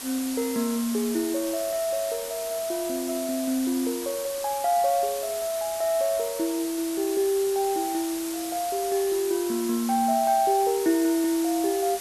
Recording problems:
background hiss; slope 0 dB per octave, SNR 9 dB

